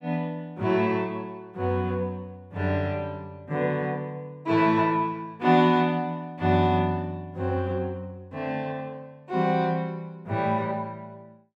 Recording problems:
none

